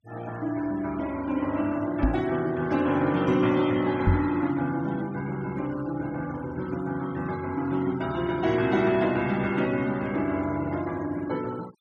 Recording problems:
noise reduction artefacts; signal-to-artefact ratio 20 dB
microphone thump; at 2 s and at 4 s; peak +8 dB vs average level

